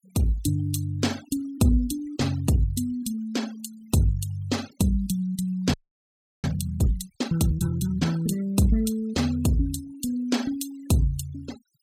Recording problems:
noise reduction artefacts; signal-to-artefact ratio 19 dB
audio freezing; at 5.5 s for 0.5 s

